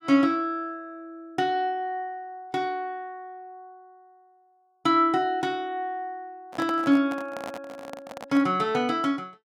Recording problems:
microphone handling noise; from 6.5 to 8.5 s; peak -5 dB vs average level

